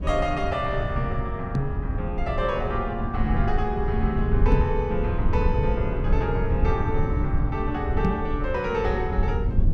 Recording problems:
rumble; below 100 Hz, SNR 0 dB
microphone bump; at 1.5 s, at 4.5 s and at 8 s; peak +7 dB vs average level

